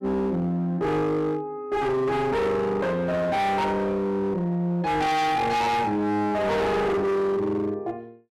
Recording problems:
distortion; hard clipping, signal-to-distortion ratio 6 dB

